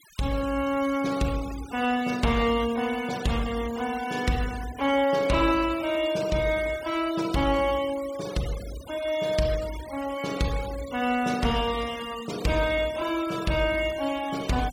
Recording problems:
noise reduction artefacts; signal-to-artefact ratio 16 dB

